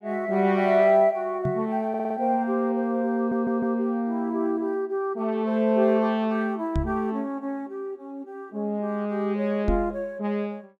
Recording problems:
microphone thump; at 1.5 s, at 7 s and at 9.5 s; peak +2 dB vs average level
stutter; at 2 s and at 3 s

